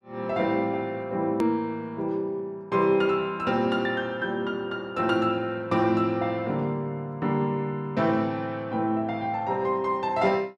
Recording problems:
hard cut with a click; at 1.5 s

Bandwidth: 12.5 kHz